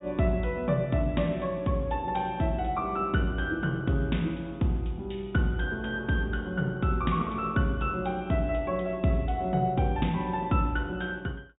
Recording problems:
treble cut off; nothing above 4 kHz

